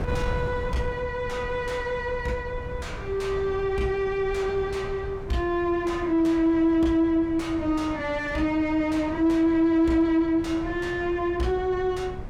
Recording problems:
distortion; soft clipping, signal-to-distortion ratio 11 dB
wind on the microphone; below 160 Hz, SNR 12 dB

